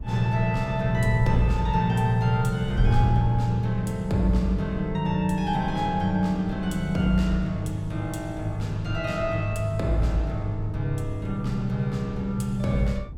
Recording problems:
wind noise; below 98 Hz, SNR 10 dB

